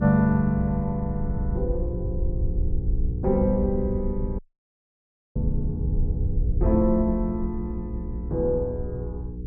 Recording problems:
hum; 60 Hz, harmonics up to 480 Hz, SNR 7 dB
low-frequency rumble; below 82 Hz, SNR 5 dB
dropout; at 4.5 s for 1 s

